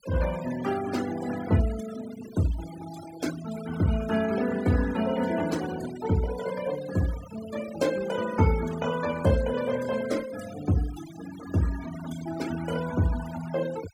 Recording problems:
denoising artefacts; signal-to-artefact ratio 13 dB

